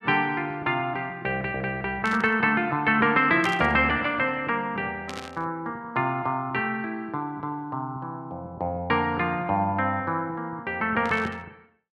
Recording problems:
burst of static; 4 times, first at 2 s; peak -6 dB vs average level

